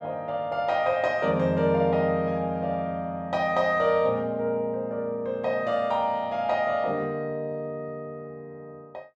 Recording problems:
none

